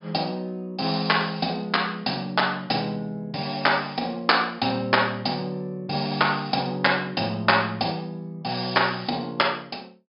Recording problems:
treble missing; nothing above 5.5 kHz

